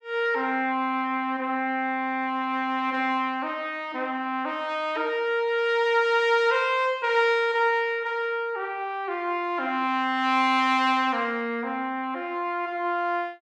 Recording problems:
none

